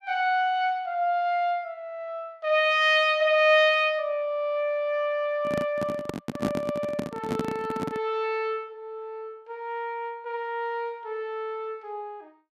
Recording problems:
microphone handling noise; from 5.5 to 8 s; peak +2 dB vs average level

